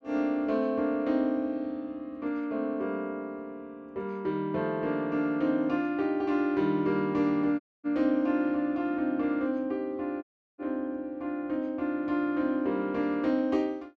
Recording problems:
dropout; at 7.5 s and at 10 s

